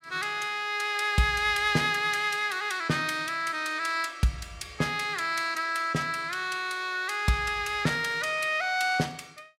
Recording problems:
none

